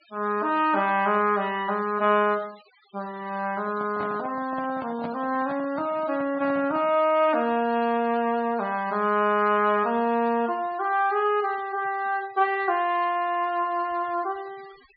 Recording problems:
treble missing; nothing above 4.7 kHz
noise reduction artefacts; signal-to-artefact ratio 23 dB
microphone handling noise; from 3.5 to 7 s; peak -7 dB vs average level

